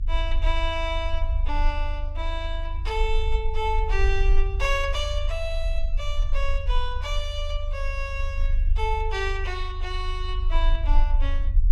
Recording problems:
low-frequency rumble; below 50 Hz, strongest tone 28 Hz, SNR -2 dB

